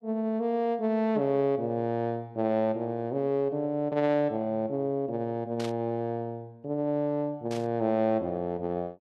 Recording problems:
static burst; at 5.5 s and at 7.5 s; peak -8 dB vs average level

